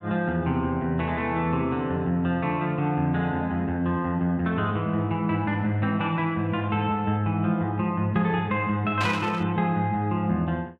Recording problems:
static burst; at 9 s; peak -2 dB vs average level

